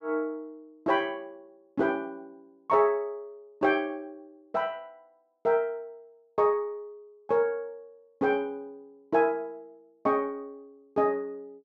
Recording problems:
none

